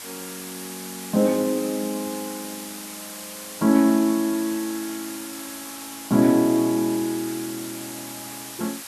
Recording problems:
hiss; slope +1 dB per octave, SNR 12 dB

